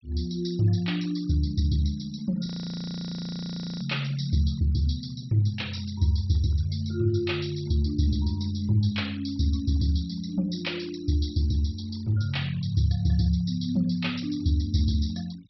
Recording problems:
low-pass filter; nothing above 5.7 kHz
noise reduction artefacts; signal-to-artefact ratio 24 dB
audio freezing; at 2.5 s for 1.5 s

